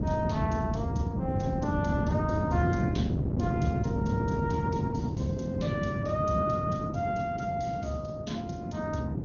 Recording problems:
codec artefacts; MP2, then Opus, log-spectral distance 2 dB, nothing above 6.7 kHz
wind noise; below 250 Hz, SNR -2 dB

